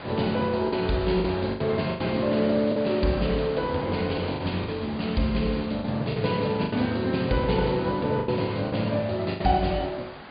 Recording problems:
low-pass filter; nothing above 4.9 kHz
hiss; SNR 15 dB
packet loss; 7% of the sound replaced, filled with the last packet

